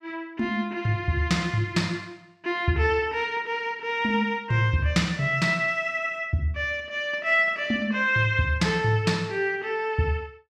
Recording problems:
none

